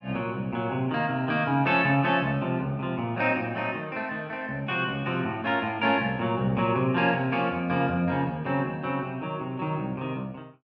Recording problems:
none

